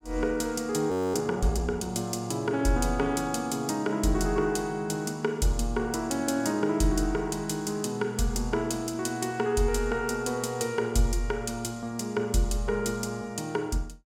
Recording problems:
audio freezing; at 1 s

